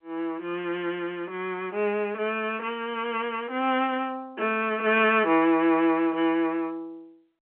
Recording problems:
telephone audio; 240 Hz to 3.3 kHz, G.711

